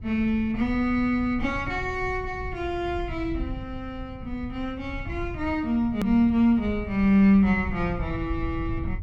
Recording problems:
low-frequency rumble; below 110 Hz, SNR 12 dB
edit click; at 6 s

